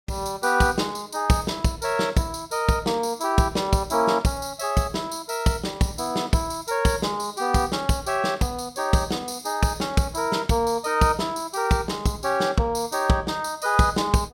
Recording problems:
none

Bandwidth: 16 kHz